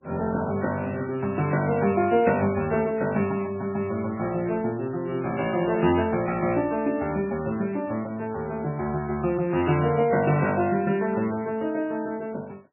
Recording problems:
lossy codec; MP3, log-spectral distance 3 dB, nothing above 2.4 kHz

